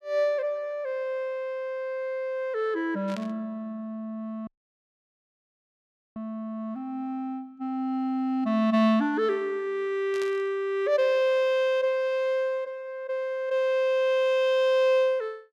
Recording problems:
burst of static; at 3 s and at 10 s; peak -10 dB vs average level
audio cutting out; at 4.5 s for 1.5 s

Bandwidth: 15 kHz